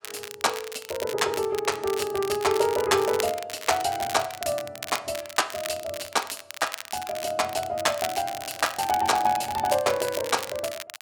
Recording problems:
crackling; vinyl, SNR 10 dB

